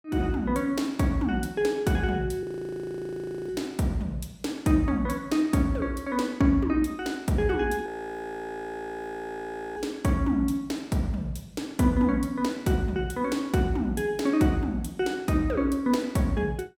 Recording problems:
audio freezing; at 2.5 s for 1 s and at 8 s for 2 s

